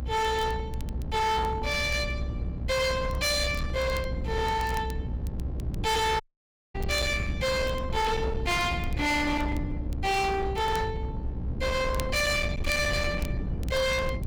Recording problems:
distorted audio; hard clipping, signal-to-distortion ratio 8 dB
hum; 60 Hz, harmonics up to 1.3 kHz, SNR 17 dB
low-frequency rumble; below 170 Hz, SNR 6 dB
crackle; vinyl, SNR 22 dB
audio cutting out; at 6 s for 0.5 s

